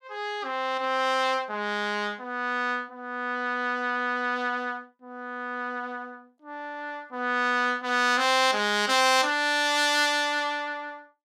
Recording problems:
none

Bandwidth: 17 kHz